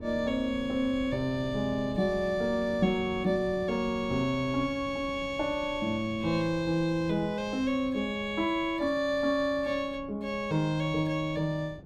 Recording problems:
wind noise; below 290 Hz, SNR 17 dB

